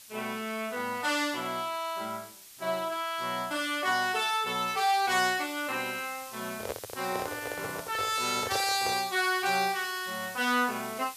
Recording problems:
hiss; slope +3 dB per octave, SNR 15 dB
handling noise; from 6.5 to 9 s; peak -1 dB vs average level

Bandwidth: 14.5 kHz